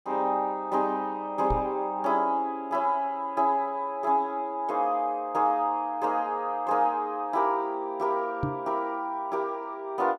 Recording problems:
microphone thump; at 1.5 s and at 8.5 s; peak +2 dB vs average level

